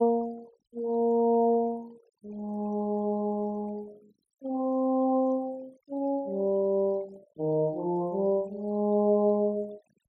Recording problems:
noise reduction artefacts; signal-to-artefact ratio 28 dB

